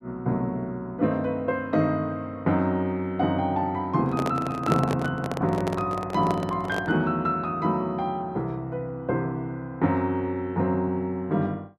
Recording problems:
handling noise; from 4 to 7 s; peak +3 dB vs average level

